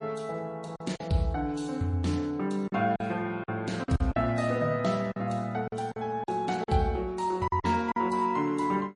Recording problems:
lossy codec; MP3, then MP3, log-spectral distance 2 dB, nothing above 10.1 kHz
packet loss; 7% of the sound replaced, filled with silence

